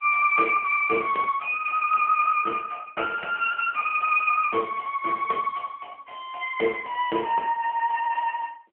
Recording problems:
phone line; 260 Hz to 2.8 kHz, AMR-NB

